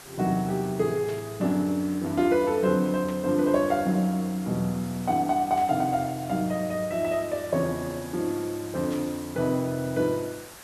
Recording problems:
hiss; slope -2 dB per octave, SNR 17 dB
burst of static; 4 times, first at 1 s; peak -13 dB vs average level

